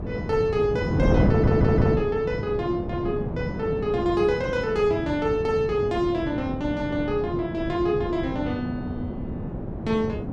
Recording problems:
wind noise; below 330 Hz, SNR 2 dB
stutter; at 1.5 s

